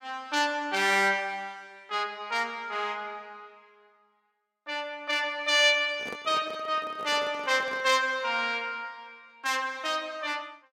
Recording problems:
handling noise; from 6 to 8 s; peak -8 dB vs average level

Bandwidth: 16.5 kHz